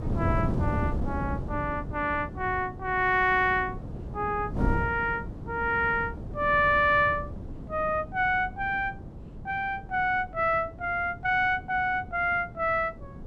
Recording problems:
wind noise; below 240 Hz, SNR 9 dB

